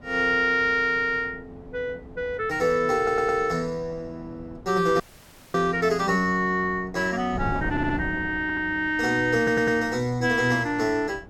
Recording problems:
wind on the microphone; below 350 Hz, SNR 17 dB
stutter; 4 times, first at 3 s
dropout; at 5 s for 0.5 s

